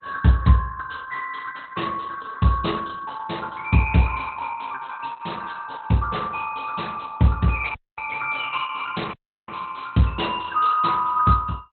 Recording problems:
lossy codec; Opus, log-spectral distance 5 dB, nothing above 4.1 kHz
audio cutting out; at 7.5 s and at 9 s

